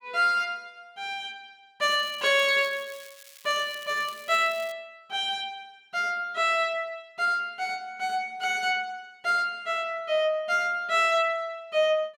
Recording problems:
crackling; from 2 to 4.5 s; loose cable, SNR 21 dB

